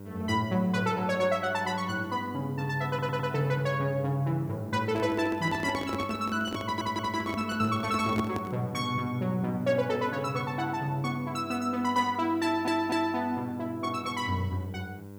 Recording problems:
hum; 50 Hz, harmonics up to 1.5 kHz, SNR 14 dB
background hiss; slope +1 dB per octave, SNR 30 dB
audio stuttering; at 3 s, at 6.5 s and at 12 s
microphone handling noise; from 5 to 8.5 s; peak +1 dB vs average level

